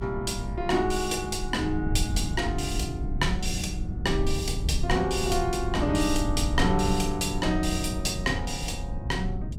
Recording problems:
mains hum; 50 Hz, harmonics up to 400 Hz, SNR 18 dB
low-frequency rumble; below 110 Hz, SNR 4 dB

